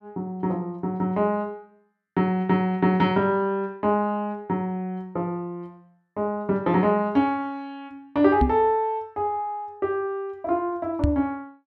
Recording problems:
microphone bump; at 8.5 s and at 11 s; peak +6 dB vs average level

